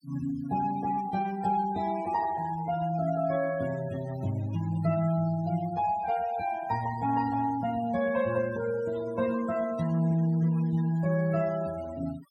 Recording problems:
noise reduction artefacts; signal-to-artefact ratio 17 dB

